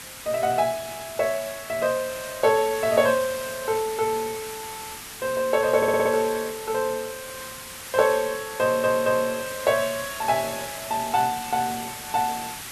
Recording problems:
background hiss; SNR 11 dB
crackling; at 4 s and from 8.5 to 12 s; loose cable, SNR 28 dB
stutter; at 6 s and at 8.5 s

